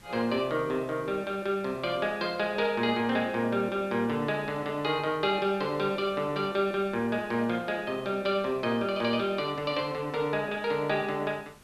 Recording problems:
hiss; slope -3 dB per octave, SNR 25 dB

